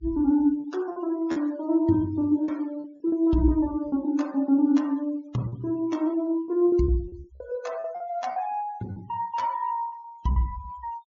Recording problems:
low-pass filter; nothing above 7.1 kHz
noise reduction artefacts; signal-to-artefact ratio 25 dB
packet loss; 8% of the sound replaced, filled with repeated pitch periods

